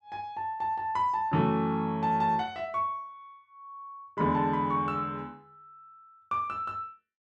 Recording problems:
none

